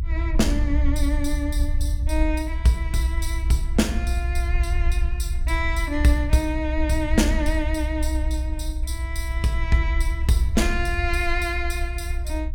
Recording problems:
rumble; below 64 Hz, SNR 0 dB

